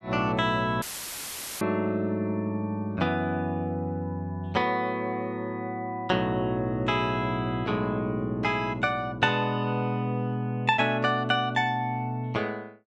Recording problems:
audio cutting out; at 1 s for 1 s; filled with static

